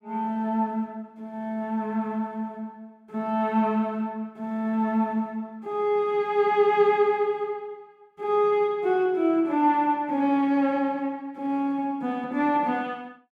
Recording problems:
none

